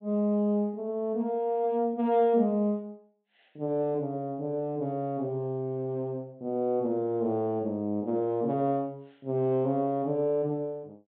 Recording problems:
low-pass filter; nothing above 4 kHz

